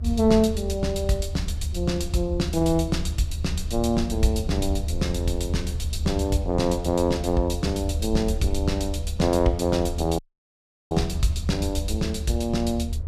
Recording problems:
low-frequency rumble; below 78 Hz, SNR 5 dB
audio cutting out; at 10 s for 0.5 s

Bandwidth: 14.5 kHz